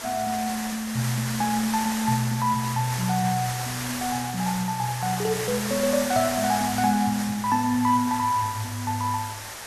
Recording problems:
hiss; SNR 6 dB

